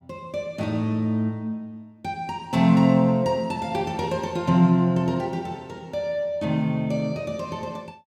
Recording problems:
none

